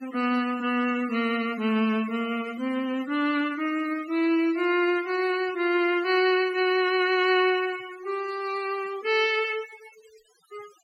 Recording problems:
noise reduction artefacts; signal-to-artefact ratio 18 dB

